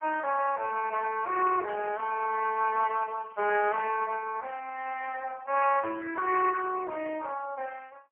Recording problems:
telephone audio; 280 Hz to 3.1 kHz, AMR-NB, then MP3
crackling; from 1.5 to 3.5 s; loose cable, SNR 27 dB

